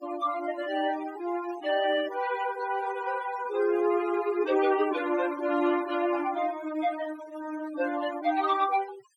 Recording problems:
denoising artefacts; signal-to-artefact ratio 15 dB

